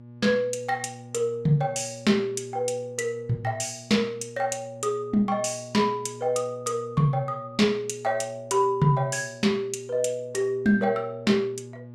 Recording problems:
hum; 60 Hz, harmonics up to 840 Hz, SNR 19 dB

